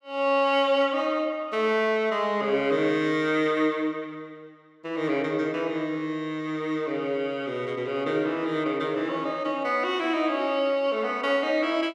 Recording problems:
none

